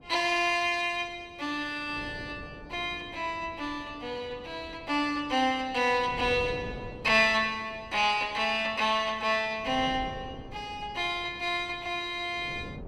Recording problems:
wind on the microphone; below 460 Hz, SNR 18 dB

